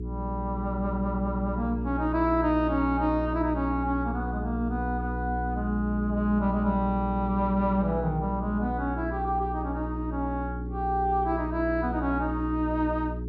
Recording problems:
hum; 60 Hz, harmonics up to 420 Hz, SNR 5 dB

